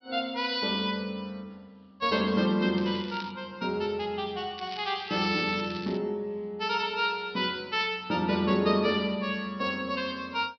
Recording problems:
treble cut off; nothing above 5.5 kHz
crackle; at 3 s and from 4.5 to 6 s; loose cable, SNR 16 dB

